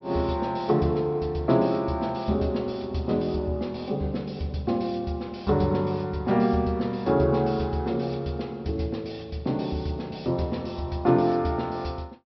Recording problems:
treble cut off; nothing above 5.7 kHz

